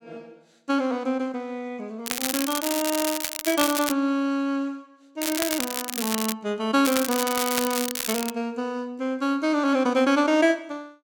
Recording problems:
crackle; from 2 to 4 s, from 5 to 6.5 s and from 7 to 8.5 s; loose cable, SNR 3 dB

